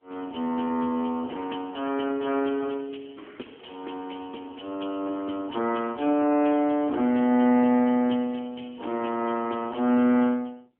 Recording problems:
phone line; 190 Hz to 3.3 kHz, AMR-NB

